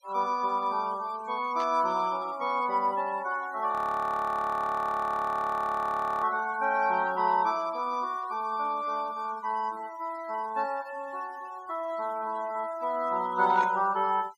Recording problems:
noise reduction artefacts; signal-to-artefact ratio 21 dB
static burst; at 1.5 s and at 14 s; peak -10 dB vs average level
frozen audio; at 3.5 s for 2.5 s

